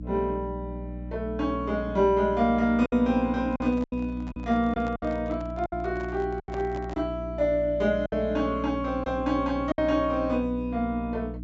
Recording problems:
treble missing; nothing above 8 kHz
hum; 60 Hz, harmonics up to 300 Hz, SNR 10 dB
packet loss; 5% of the sound replaced, filled with silence
handling noise; from 3.5 to 7 s; peak -10 dB vs average level

